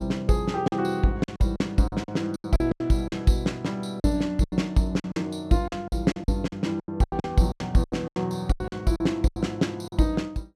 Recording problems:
lost packets; 15% of the sound replaced, filled with silence

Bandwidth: 14.5 kHz